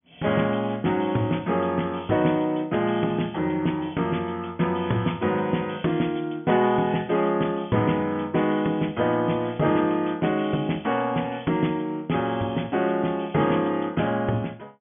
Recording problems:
treble cut off; nothing above 3.5 kHz

